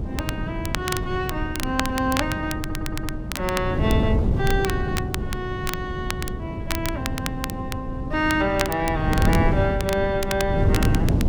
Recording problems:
wind noise; below 200 Hz, SNR 0 dB
crackle; vinyl, SNR 7 dB
stutter; at 2.5 s

